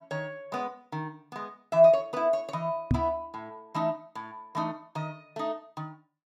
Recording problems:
microphone bump; at 3 s; peak +7 dB vs average level

